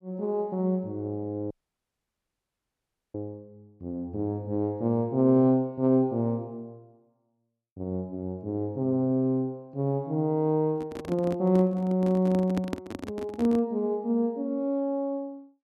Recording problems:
dropout; at 1.5 s for 1.5 s
handling noise; from 11 to 14 s; peak -1 dB vs average level

